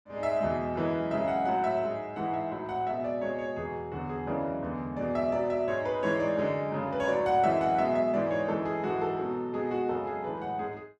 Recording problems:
none

